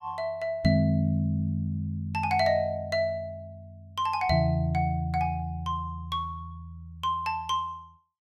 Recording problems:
none

